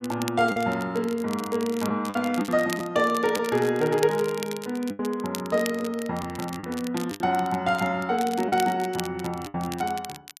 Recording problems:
crackle; vinyl, SNR 14 dB
lost packets; 5% of the sound replaced, filled with the last packet

